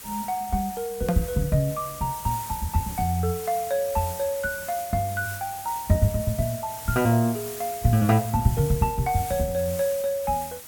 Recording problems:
background hiss; slope -1 dB per octave, SNR 11 dB
edit click; at 1 s

